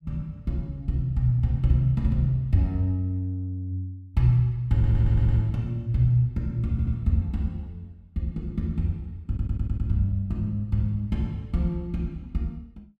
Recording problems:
audio stuttering; at 4.5 s, at 6.5 s and at 9.5 s

